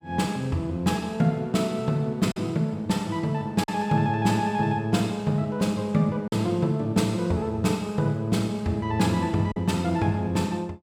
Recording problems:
lost packets; 1.5% of the sound replaced, filled with silence

